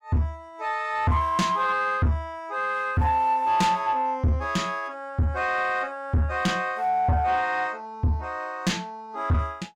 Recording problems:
distorted audio; soft clipping, signal-to-distortion ratio 6 dB

